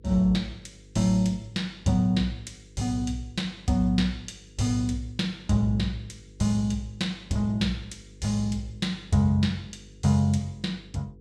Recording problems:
electrical hum; 50 Hz, harmonics up to 500 Hz, SNR 25 dB

